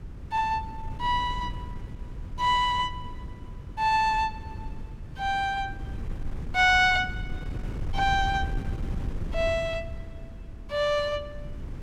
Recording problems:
wind noise; below 120 Hz, SNR 11 dB

